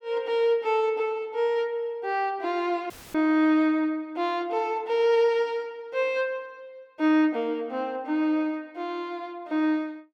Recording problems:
dropout; at 3 s; filled with static

